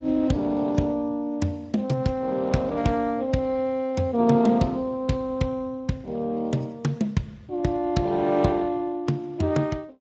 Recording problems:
lossy codec; AAC, then Speex, log-spectral distance 2 dB, nothing above 7.3 kHz

